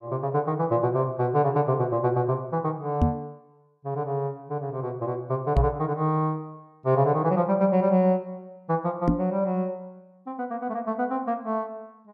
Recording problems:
microphone bump; at 3 s, at 5.5 s and at 9 s; peak +7 dB vs average level

